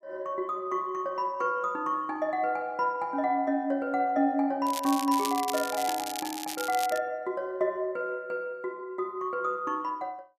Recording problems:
crackling; from 4.5 to 7 s; loose cable, SNR 7 dB

